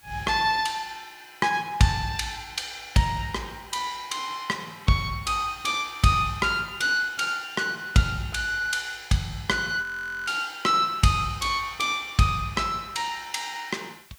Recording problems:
background hiss; slope +1 dB per octave, SNR 27 dB
frozen audio; at 10 s

